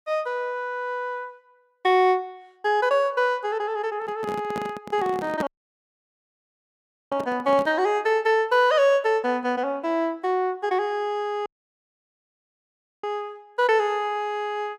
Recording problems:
handling noise; from 4 to 7.5 s; peak -2 dB vs average level
audio cutting out; at 5.5 s for 1.5 s and at 11 s for 1.5 s

